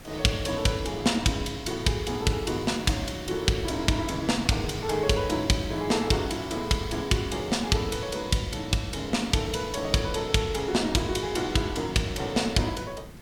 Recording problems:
background hiss; SNR 24 dB
wind on the microphone; below 230 Hz, SNR 18 dB

